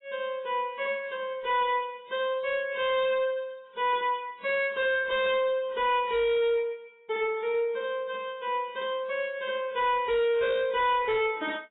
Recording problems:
lossy compression; AAC, log-spectral distance 2 dB, nothing above 3.3 kHz
distortion; hard clipping, signal-to-distortion ratio 11 dB

